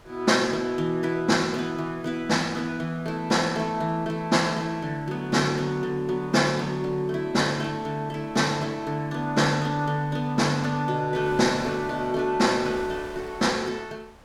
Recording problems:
wind on the microphone; below 1.7 kHz, SNR 22 dB

